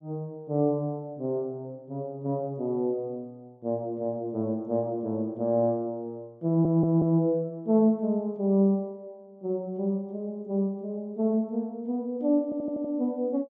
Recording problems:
stutter; at 6.5 s and at 12 s

